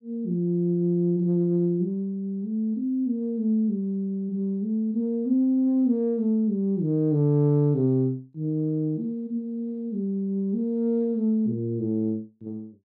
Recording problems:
none

